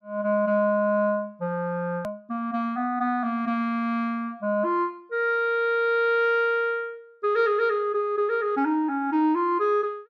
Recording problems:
click at an edit; at 2 s

